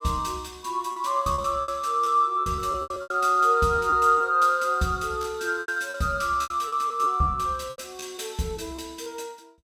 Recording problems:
packet loss; 11% of the sound replaced, filled with repeated pitch periods

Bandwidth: 17 kHz